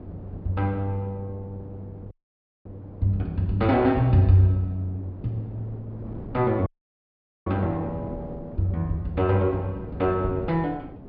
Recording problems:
low-pass filter; nothing above 5.5 kHz
wind noise; below 390 Hz, SNR 16 dB
audio cutting out; at 2 s for 0.5 s and at 6.5 s for 1 s

